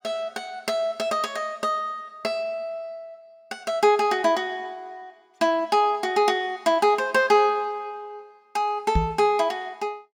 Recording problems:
microphone bump; at 9 s; peak +4 dB vs average level

